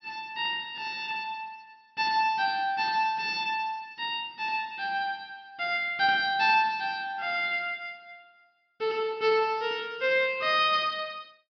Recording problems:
treble cut off; nothing above 5.5 kHz

